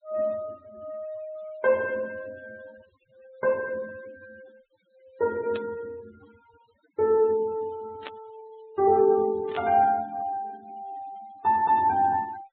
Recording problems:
treble cut off; nothing above 4 kHz
denoising artefacts; signal-to-artefact ratio 24 dB
burst of static; at 5.5 s, at 8 s and at 9.5 s; peak -9 dB vs average level

